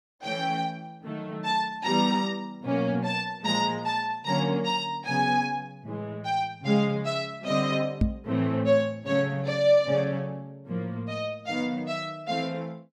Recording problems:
microphone thump; at 8 s; peak +7 dB vs average level

